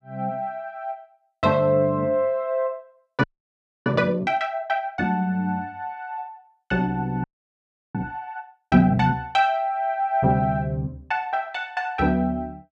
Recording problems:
frozen audio; at 3 s for 0.5 s and at 7 s for 0.5 s

